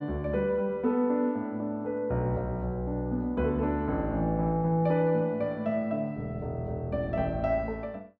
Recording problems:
none

